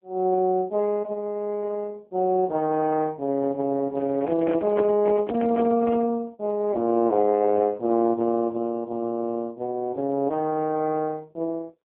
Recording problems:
telephone audio; 170 Hz to 2.7 kHz, AMR-NB
handling noise; from 4 to 6 s; peak -4 dB vs average level

